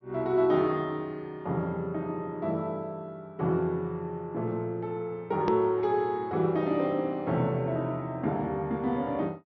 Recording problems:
low-pass filter; nothing above 6.1 kHz
hard cut with a click; at 5.5 s

